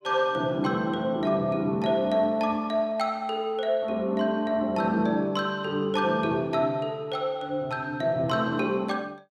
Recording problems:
none

